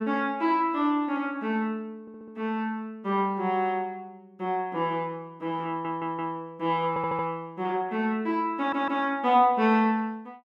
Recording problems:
stutter; 4 times, first at 2 s

